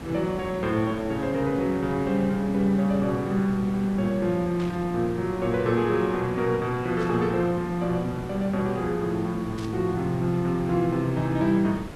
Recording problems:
hiss; slope -6 dB per octave, SNR 12 dB
burst of static; at 4.5 s, at 7 s and at 9.5 s; peak -13 dB vs average level

